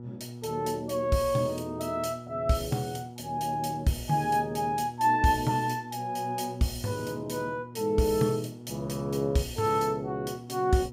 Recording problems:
electrical hum; 60 Hz, harmonics up to 960 Hz, SNR 15 dB

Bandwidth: 15.5 kHz